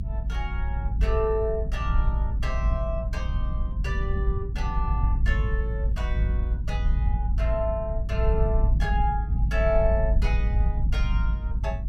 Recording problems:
rumble; below 68 Hz, strongest tone 52 Hz, SNR -5 dB

